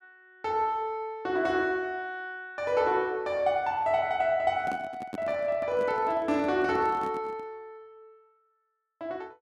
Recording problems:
microphone handling noise; from 4.5 to 7.5 s; peak -4 dB vs average level

